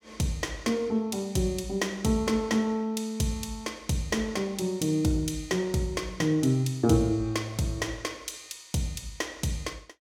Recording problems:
none

